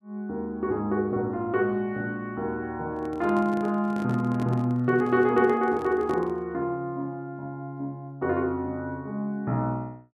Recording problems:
handling noise; from 3 to 6.5 s; peak -6 dB vs average level

